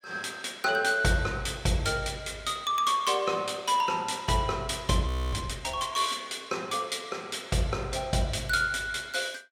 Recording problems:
audio freezing; at 5 s

